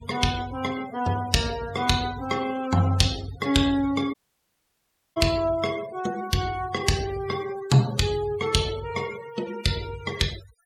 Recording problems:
noise reduction artefacts; signal-to-artefact ratio 14 dB
audio cutting out; at 4 s for 1 s

